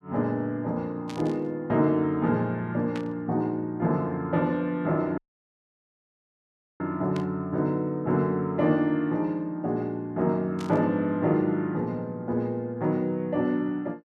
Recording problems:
static burst; 4 times, first at 1 s; peak -9 dB vs average level
dropout; at 5 s for 1.5 s

